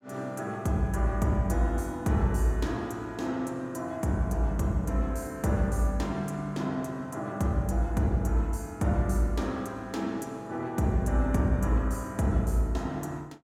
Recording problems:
none

